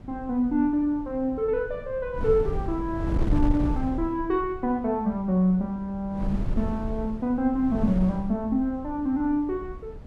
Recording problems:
wind noise; below 120 Hz, SNR 8 dB

